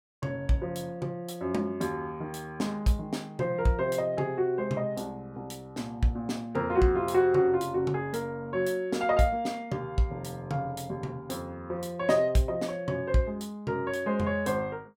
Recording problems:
none

